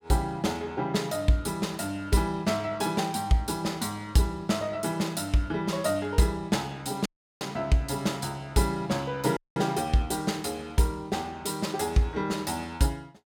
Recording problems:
dropout; at 7 s and at 9.5 s

